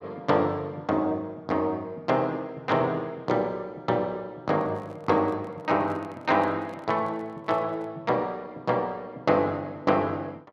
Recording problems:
microphone handling noise; from 4.5 to 8 s; peak -12 dB vs average level

